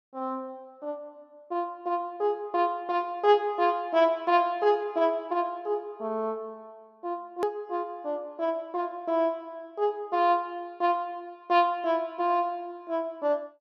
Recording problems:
click at an edit; at 7.5 s

